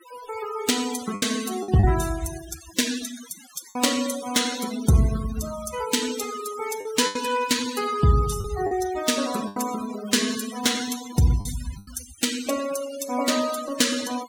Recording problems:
noise reduction artefacts; signal-to-artefact ratio 10 dB
packet loss; 4% of the sound replaced, filled with the last packet

